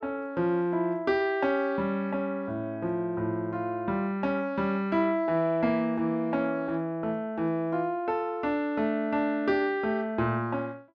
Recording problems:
none

